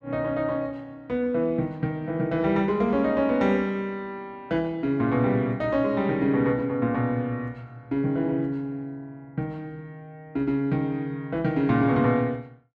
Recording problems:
none

